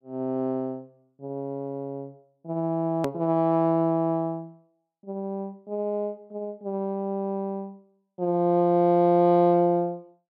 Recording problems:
edit click; at 3 s

